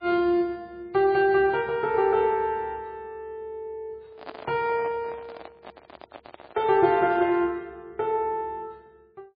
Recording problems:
lossy compression; MP3, log-spectral distance 2 dB, nothing above 4 kHz
handling noise; from 4 to 7.5 s; peak -10 dB vs average level

